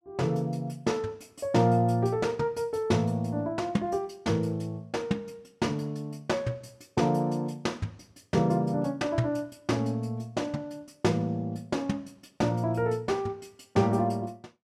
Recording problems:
none

